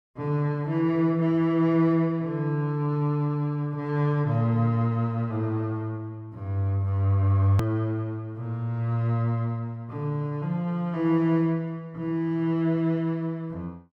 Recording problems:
hard cut with a click; at 7.5 s

